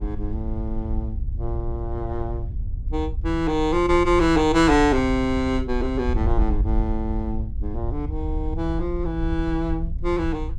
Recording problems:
wind on the microphone; below 70 Hz, SNR 5 dB

